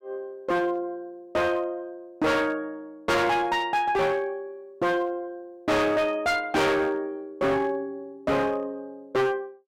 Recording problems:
distortion; hard clipping, uneven, signal-to-distortion ratio 6 dB

